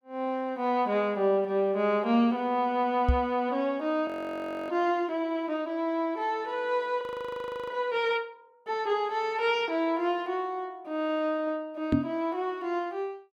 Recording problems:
microphone bump; at 3 s and at 12 s; peak +8 dB vs average level
frozen audio; at 4 s for 0.5 s and at 7 s for 0.5 s

